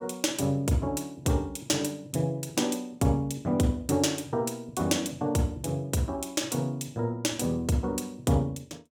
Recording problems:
none

